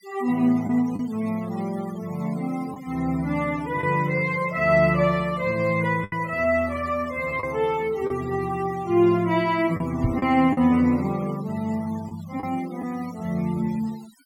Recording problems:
denoising artefacts; signal-to-artefact ratio 20 dB
lost packets; 3% of the sound replaced, filled with the last packet
microphone bump; at 10 s; peak +4 dB vs average level

